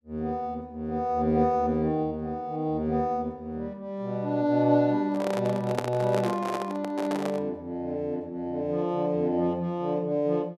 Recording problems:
microphone handling noise; from 5 to 7.5 s; peak +2 dB vs average level

